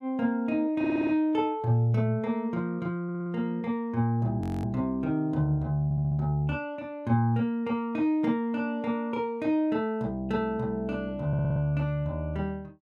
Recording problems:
audio stuttering; 4 times, first at 1 s
frozen audio; at 4.5 s

